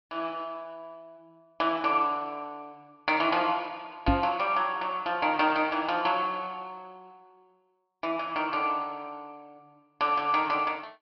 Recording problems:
treble cut off; nothing above 5.5 kHz
microphone thump; at 4 s; peak +6 dB vs average level

